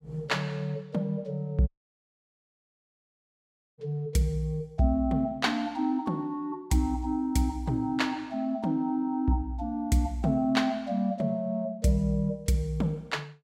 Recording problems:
audio cutting out; at 1.5 s for 2 s

